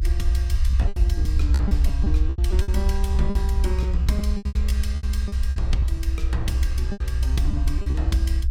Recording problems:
rumble; below 66 Hz, SNR -8 dB
packet loss; 12% of the sound replaced, filled with repeated pitch periods

